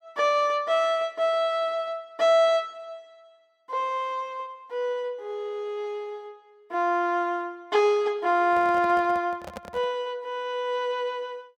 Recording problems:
microphone handling noise; from 8.5 to 10 s; peak -8 dB vs average level

